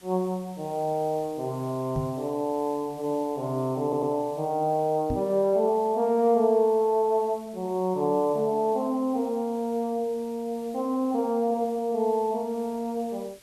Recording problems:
background hiss; slope -1 dB per octave, SNR 26 dB
microphone bump; at 2 s and at 5 s; peak -1 dB vs average level
audio stuttering; at 4 s

